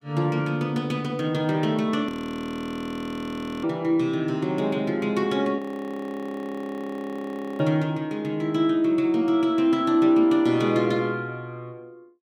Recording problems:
frozen audio; at 2 s for 1.5 s and at 5.5 s for 2 s

